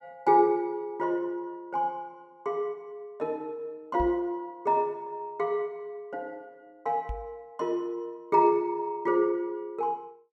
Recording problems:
knock on the microphone; at 4 s and at 7 s; peak -3 dB vs average level

